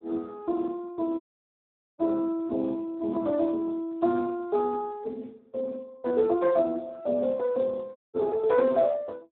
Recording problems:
phone line; 280 Hz to 2.1 kHz, Speex
audio cutting out; at 1 s for 1 s and at 8 s

